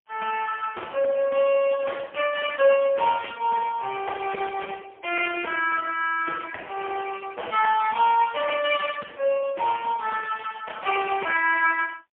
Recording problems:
telephone audio; 340 Hz to 3.2 kHz, AMR-NB, then MP3

